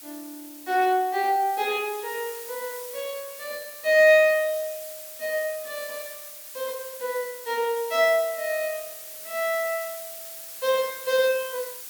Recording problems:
hiss; slope +2 dB per octave, SNR 13 dB

